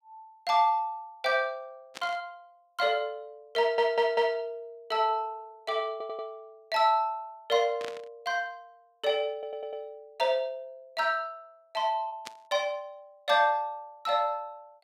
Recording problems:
lost packets; 0.5% of the sound replaced, filled with repeated pitch periods
burst of static; at 2 s, at 8 s and at 12 s; peak -7 dB vs average level
stutter; at 3.5 s, at 6 s and at 9.5 s

